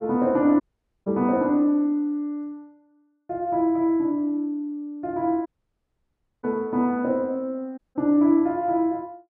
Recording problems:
dropout; at 0.5 s, at 5.5 s for 1 s and at 8 s

